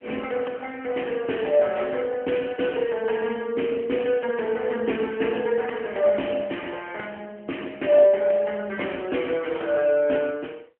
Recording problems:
phone line; 240 Hz to 3.2 kHz, AMR-NB

